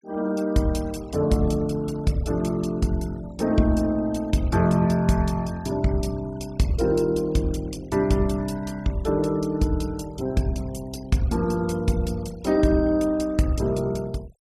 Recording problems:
noise reduction artefacts; signal-to-artefact ratio 23 dB

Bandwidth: 14.5 kHz